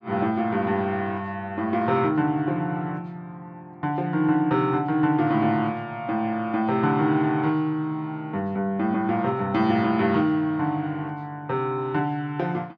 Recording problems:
none

